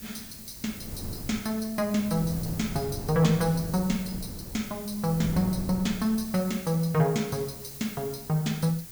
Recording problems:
background hiss; slope +1 dB per octave, SNR 13 dB
wind on the microphone; below 240 Hz, SNR 12 dB

